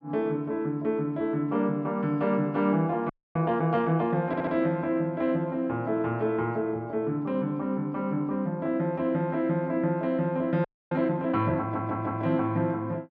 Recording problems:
audio freezing; at 3 s and at 11 s
stutter; at 4.5 s and at 12 s

